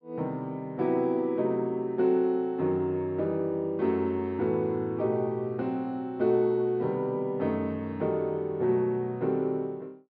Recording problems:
treble cut off; nothing above 5.8 kHz

